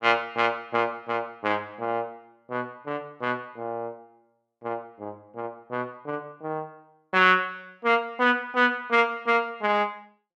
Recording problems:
none

